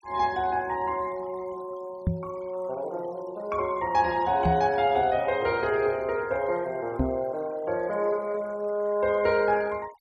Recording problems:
denoising artefacts; signal-to-artefact ratio 24 dB
microphone thump; at 2 s, at 4.5 s and at 7 s; peak +5 dB vs average level

